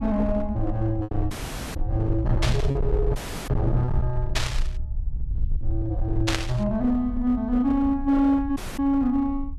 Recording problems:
distorted audio; hard clipping, signal-to-distortion ratio 10 dB
rumble; below 68 Hz, SNR 6 dB
packet loss; 2% of the sound replaced, filled with repeated pitch periods
dropout; at 1.5 s, at 3 s and at 8.5 s
burst of static; at 2.5 s, at 4.5 s and at 6.5 s; peak +3 dB vs average level

